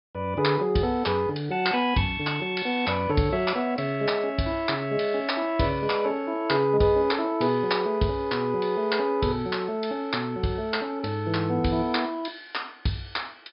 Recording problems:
treble cut off; nothing above 5.5 kHz

